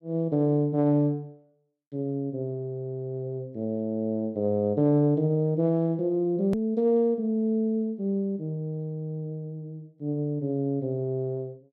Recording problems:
click at an edit; at 6.5 s

